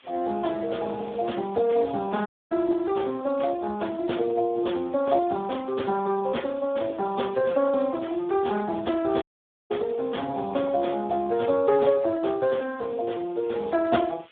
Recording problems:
phone line; 240 Hz to 3.6 kHz, Speex
background hiss; SNR 27 dB
dropout; at 2.5 s and at 9 s

